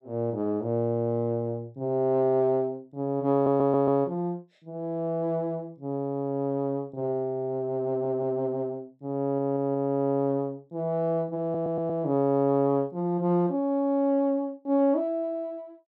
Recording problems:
audio stuttering; 4 times, first at 3.5 s

